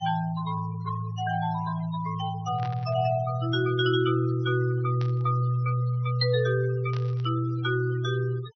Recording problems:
treble missing; nothing above 6 kHz
denoising artefacts; signal-to-artefact ratio 19 dB
burst of static; at 2.5 s, at 5 s and at 7 s; peak -12 dB vs average level

